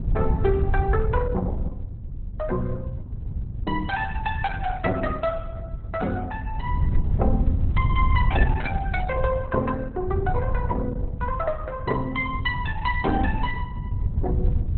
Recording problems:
lossy codec; Opus, log-spectral distance 2 dB, nothing above 4.1 kHz
wind on the microphone; below 96 Hz, SNR 1 dB

